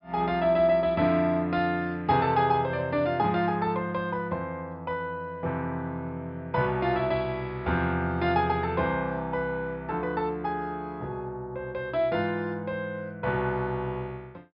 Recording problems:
low-pass filter; nothing above 5.5 kHz

